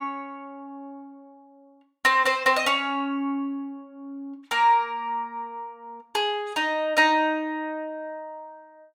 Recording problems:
none

